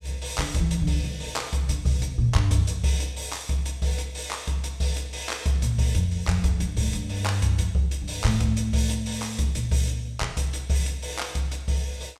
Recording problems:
none

